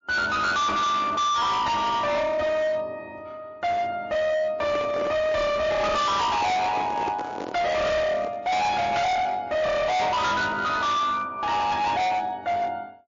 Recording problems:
lossy codec; MP3, log-spectral distance 2 dB, nothing above 6.3 kHz
distorted audio; hard clipping, signal-to-distortion ratio 6 dB
handling noise; from 4.5 to 8.5 s; peak -3 dB vs average level

